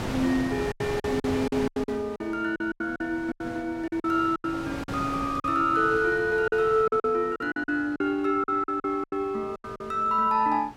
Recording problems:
wind noise; below 1.3 kHz, SNR 12 dB
lost packets; 13% of the sound replaced, filled with silence

